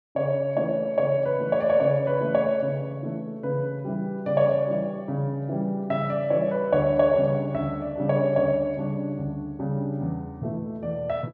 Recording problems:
none

